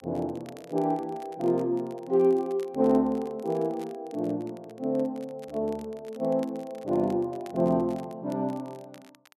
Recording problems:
crackle; vinyl, SNR 27 dB

